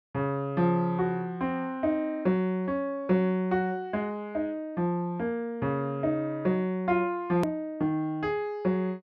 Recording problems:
hard cut with a click; at 7.5 s

